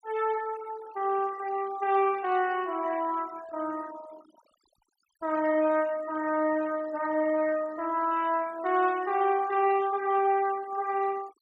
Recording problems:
noise reduction artefacts; signal-to-artefact ratio 20 dB

